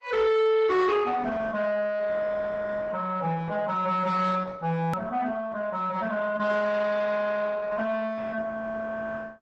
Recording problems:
lossy compression; Opus, log-spectral distance 3 dB, nothing above 15.1 kHz
distortion; soft clipping, signal-to-distortion ratio 10 dB
hard cut with a click; at 5 s

